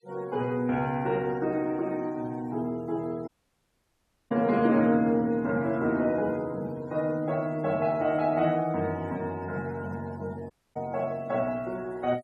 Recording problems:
noise reduction artefacts; signal-to-artefact ratio 25 dB
audio cutting out; at 3.5 s for 1 s and at 11 s

